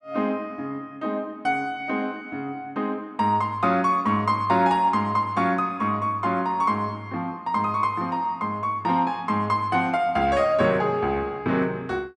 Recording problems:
none

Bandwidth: 12.5 kHz